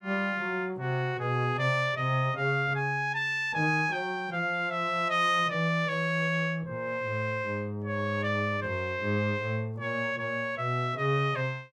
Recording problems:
none

